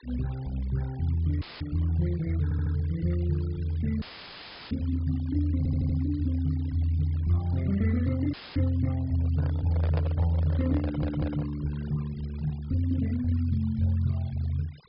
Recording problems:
low-pass filter; nothing above 5.5 kHz
denoising artefacts; signal-to-artefact ratio 23 dB
audio cutting out; at 1.5 s, at 4 s for 0.5 s and at 8.5 s; filled with static
audio stuttering; at 2.5 s, at 5.5 s and at 11 s
microphone handling noise; from 9 to 11 s; peak -3 dB vs average level

